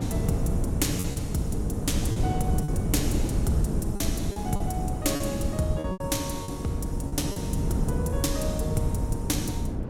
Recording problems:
wind on the microphone; below 200 Hz, SNR -1 dB
packet loss; 6% of the sound replaced, filled with repeated pitch periods

